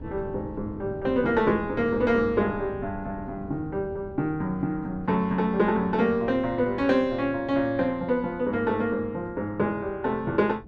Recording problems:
wind on the microphone; below 270 Hz, SNR 16 dB

